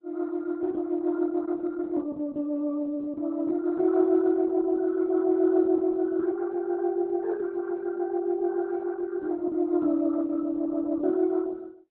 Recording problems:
codec artefacts; Opus, log-spectral distance 2 dB

